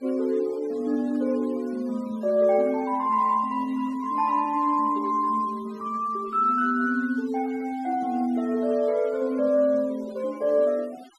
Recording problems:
noise reduction artefacts; signal-to-artefact ratio 25 dB

